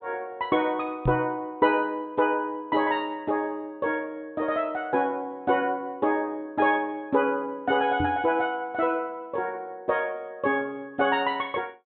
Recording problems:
treble missing; nothing above 4 kHz
microphone thump; at 1 s and at 8 s; peak +2 dB vs average level

